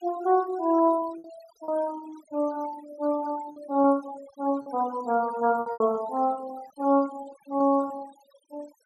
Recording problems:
denoising artefacts; signal-to-artefact ratio 20 dB
lost packets; 6% of the sound replaced, filled with repeated pitch periods

